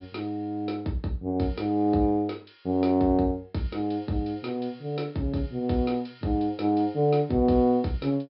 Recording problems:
low-pass filter; nothing above 5.2 kHz

